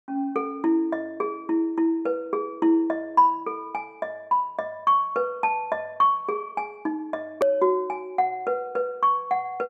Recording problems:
hard cut with a click; at 7.5 s

